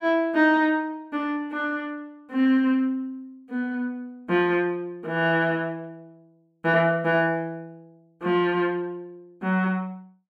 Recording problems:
none

